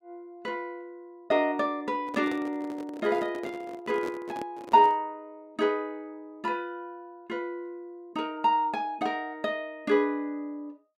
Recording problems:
microphone handling noise; from 2 to 5 s; peak -5 dB vs average level

